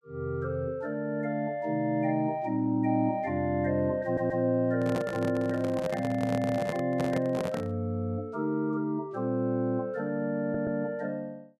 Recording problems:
stutter; at 4 s and at 10 s
handling noise; from 4.5 to 8 s; peak -1 dB vs average level

